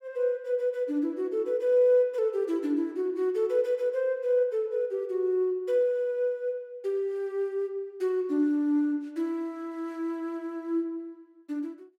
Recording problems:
none

